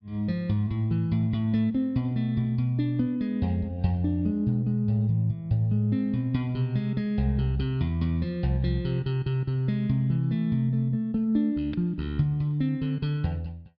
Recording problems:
treble missing; nothing above 5.5 kHz

